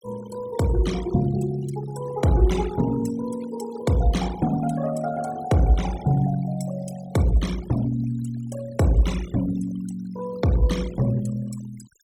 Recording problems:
denoising artefacts; signal-to-artefact ratio 16 dB

